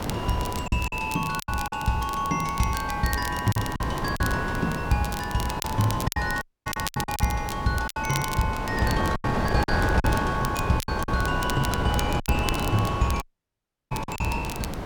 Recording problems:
background hiss; SNR 16 dB
wind noise; below 730 Hz, SNR 3 dB
crackle; vinyl, SNR 10 dB
packet loss; 8% of the sound replaced, filled with silence
audio cutting out; at 6.5 s and at 13 s for 0.5 s

